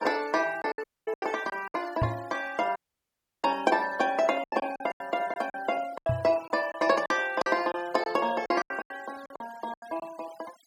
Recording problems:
denoising artefacts; signal-to-artefact ratio 20 dB
lost packets; 12% of the sound replaced, filled with silence
audio cutting out; at 1 s and at 3 s for 0.5 s
knock on the microphone; at 2 s and at 6 s; peak +4 dB vs average level

